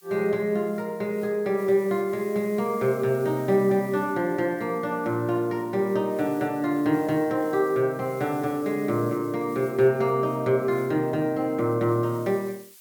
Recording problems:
hiss; slope +4 dB per octave, SNR 24 dB

